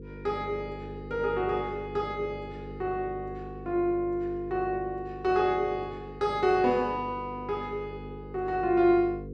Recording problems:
hum; 50 Hz, harmonics up to 500 Hz, SNR 13 dB

